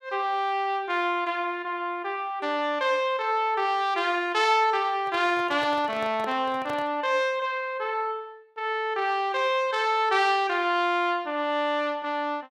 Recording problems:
microphone handling noise; from 5 to 7 s; peak -8 dB vs average level

